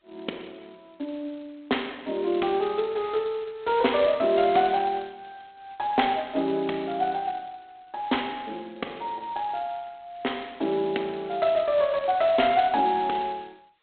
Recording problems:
telephone audio; 240 Hz to 4 kHz, G.726

